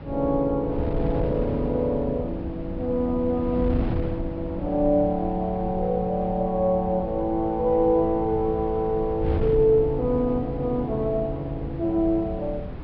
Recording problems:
treble missing; nothing above 5.5 kHz
wind on the microphone; below 170 Hz, SNR 9 dB

